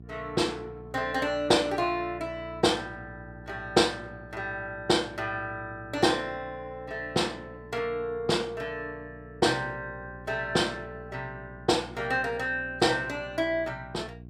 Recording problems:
electrical hum; 60 Hz, harmonics up to 660 Hz, SNR 18 dB

